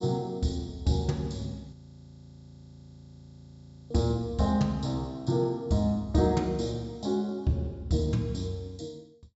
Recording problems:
treble cut off; nothing above 8 kHz
audio freezing; at 1.5 s for 2 s

